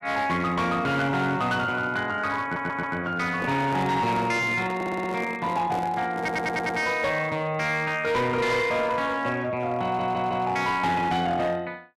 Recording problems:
distorted audio; hard clipping, signal-to-distortion ratio 12 dB
audio stuttering; 4 times, first at 2.5 s
handling noise; from 3.5 to 7 s; peak -4 dB vs average level

